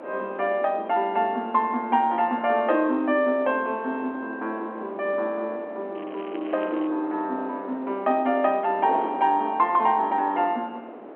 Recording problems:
phone line; 220 Hz to 3.5 kHz, G.711
wind noise; below 740 Hz, SNR 14 dB
crackling; at 6 s; loose cable, SNR 24 dB

